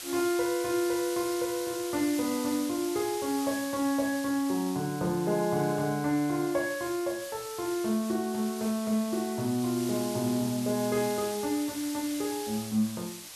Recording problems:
hiss; slope +2 dB per octave, SNR 10 dB

